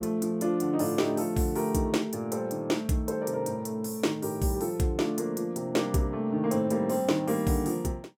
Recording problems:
none

